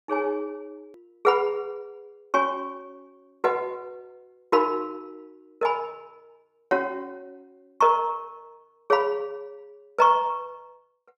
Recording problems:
click at an edit; at 1 s

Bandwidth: 15 kHz